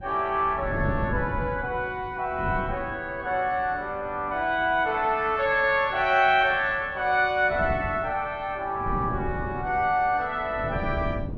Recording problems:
wind noise; below 240 Hz, SNR 11 dB

